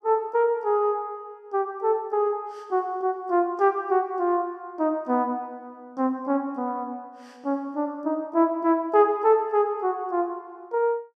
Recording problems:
none

